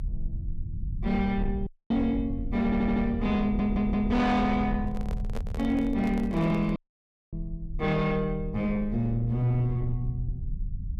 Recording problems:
distortion; soft clipping, signal-to-distortion ratio 12 dB
low-frequency rumble; below 86 Hz, SNR 9 dB
audio cutting out; at 1.5 s and at 7 s for 0.5 s
stutter; at 2.5 s and at 3.5 s
handling noise; from 5 to 7 s; peak -7 dB vs average level

